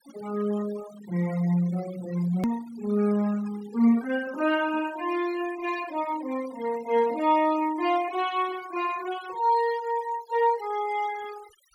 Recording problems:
noise reduction artefacts; signal-to-artefact ratio 18 dB
click at an edit; at 2.5 s

